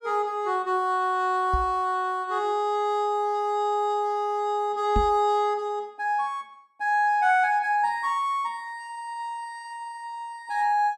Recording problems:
knock on the microphone; at 1.5 s and at 5 s; peak +2 dB vs average level

